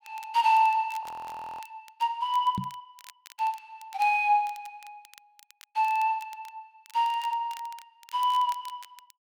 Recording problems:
crackle; vinyl, SNR 25 dB
audio freezing; at 1 s for 0.5 s
microphone bump; at 2.5 s; peak -1 dB vs average level

